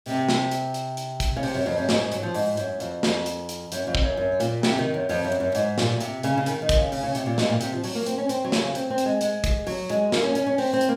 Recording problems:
none

